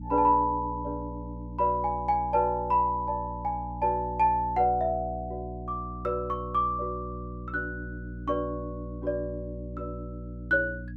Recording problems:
electrical hum; 60 Hz, harmonics up to 300 Hz, SNR 11 dB

